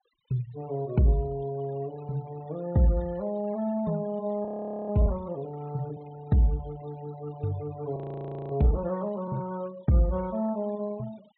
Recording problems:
low-pass filter; nothing above 4 kHz
denoising artefacts; signal-to-artefact ratio 22 dB
frozen audio; at 4.5 s and at 8 s for 0.5 s

